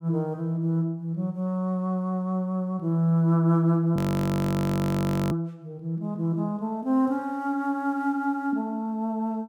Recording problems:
audio freezing; at 4 s for 1.5 s

